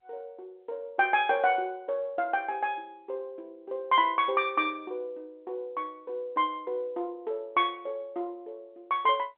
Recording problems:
phone line; 280 Hz to 3.7 kHz, G.711

